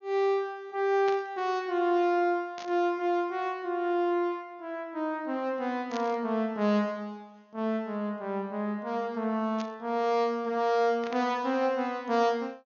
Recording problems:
treble missing; nothing above 6.7 kHz
burst of static; 5 times, first at 1 s; peak -8 dB vs average level

